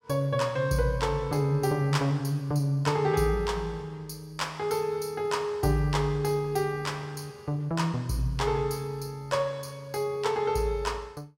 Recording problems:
none

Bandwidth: 16.5 kHz